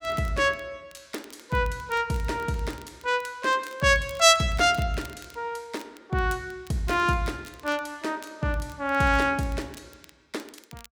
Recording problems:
crackling; vinyl, SNR 25 dB

